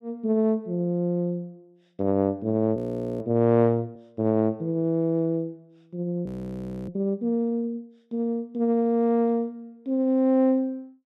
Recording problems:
frozen audio; at 3 s and at 6.5 s for 0.5 s

